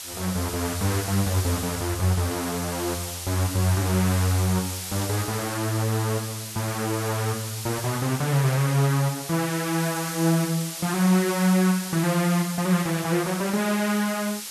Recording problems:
background hiss; slope +3 dB per octave, SNR 8 dB

